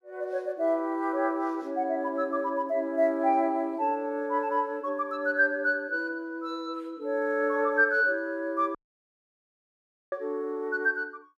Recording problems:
dropout; at 9 s for 1.5 s

